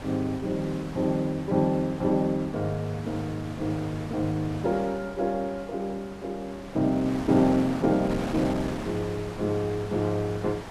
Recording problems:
wind on the microphone; below 1.4 kHz, SNR 12 dB

